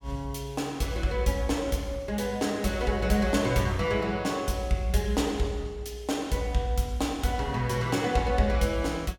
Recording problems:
none

